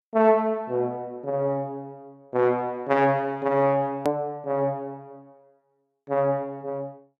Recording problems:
click at an edit; at 4 s

